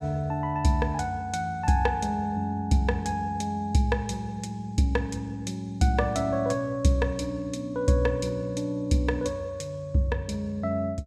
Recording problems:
none

